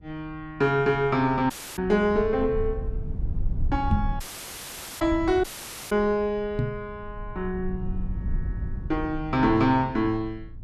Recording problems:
low-frequency rumble; below 86 Hz, SNR 10 dB
audio cutting out; at 1.5 s, at 4 s for 1 s and at 5.5 s
knock on the microphone; at 4 s and at 6.5 s; peak +3 dB vs average level

